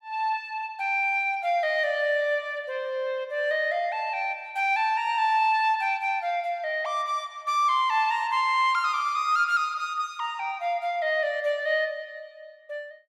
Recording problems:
none

